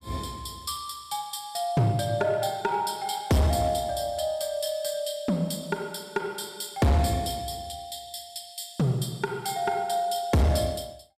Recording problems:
distorted audio; hard clipping, signal-to-distortion ratio 10 dB

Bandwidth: 14.5 kHz